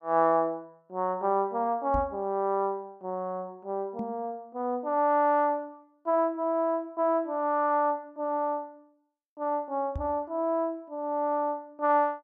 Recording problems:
microphone bump; at 2 s, at 4 s and at 10 s; peak -3 dB vs average level

